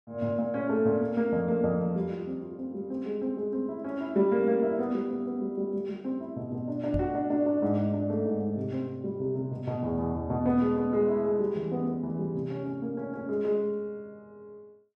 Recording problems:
knock on the microphone; at 7 s; peak +1 dB vs average level

